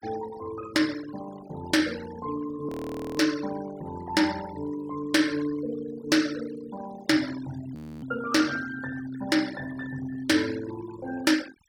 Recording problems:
denoising artefacts; signal-to-artefact ratio 15 dB
audio freezing; at 2.5 s and at 8 s

